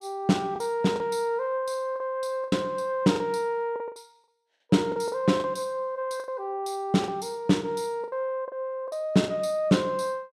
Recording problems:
lost packets; 8% of the sound replaced, filled with the last packet

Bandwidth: 14.5 kHz